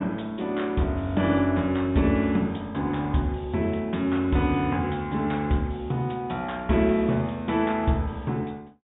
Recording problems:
low-pass filter; nothing above 3.6 kHz

